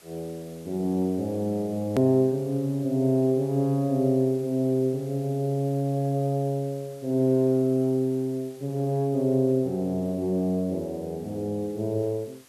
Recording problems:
hiss; slope -1 dB per octave, SNR 26 dB
edit click; at 2 s

